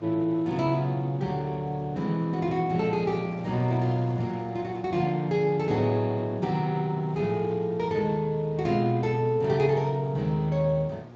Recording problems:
codec artefacts; Speex, log-spectral distance 2 dB
mains hum; 60 Hz, harmonics up to 1.2 kHz, SNR 21 dB
wind on the microphone; below 920 Hz, SNR 23 dB

